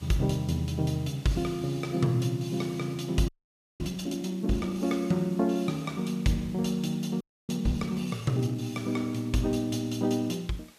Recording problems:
background hiss; slope -1 dB per octave, SNR 25 dB
frozen audio; at 3.5 s for 0.5 s and at 7 s

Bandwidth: 14.5 kHz